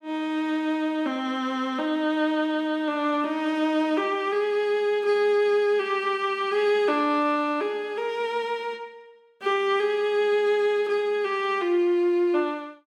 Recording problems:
none

